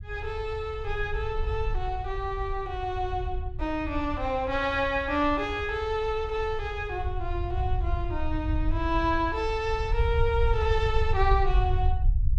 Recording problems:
low-frequency rumble; below 74 Hz, SNR 3 dB

